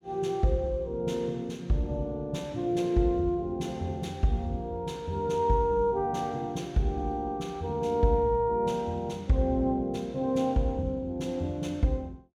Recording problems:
none

